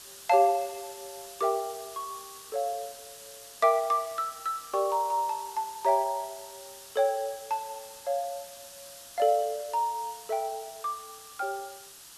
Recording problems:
hiss; SNR 15 dB

